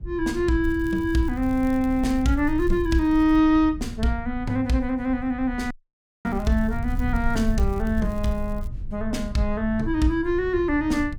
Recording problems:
rumble; below 74 Hz, SNR 10 dB
crackle; from 0.5 to 3.5 s and from 6.5 to 8.5 s; loose cable, SNR 29 dB
dropout; at 5.5 s for 0.5 s

